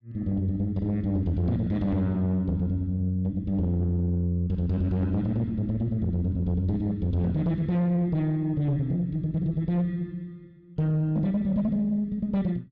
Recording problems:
distortion; soft clipping, signal-to-distortion ratio 11 dB

